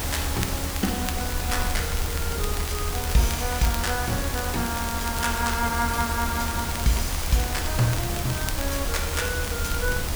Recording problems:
hiss; slope -3 dB per octave, SNR 2 dB
low-frequency rumble; below 78 Hz, SNR 4 dB
wind on the microphone; below 220 Hz, SNR 15 dB
crackle; vinyl, SNR 10 dB

